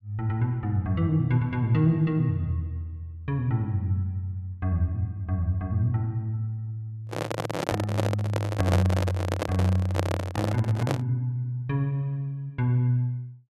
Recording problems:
microphone handling noise; from 7 to 11 s; peak +4 dB vs average level

